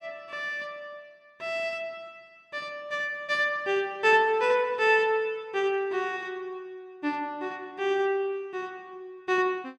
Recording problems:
none

